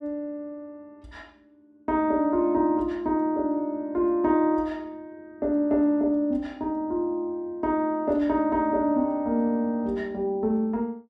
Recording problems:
none

